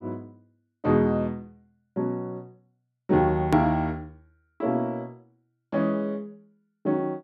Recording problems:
click at an edit; at 3.5 s

